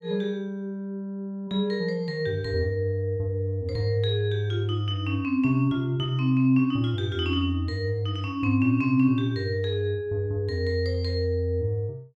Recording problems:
none

